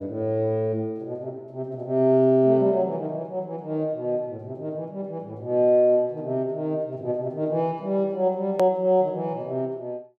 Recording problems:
edit click; at 8.5 s

